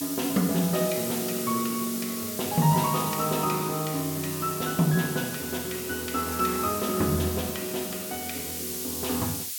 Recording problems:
hiss; slope +8 dB per octave, SNR 4 dB

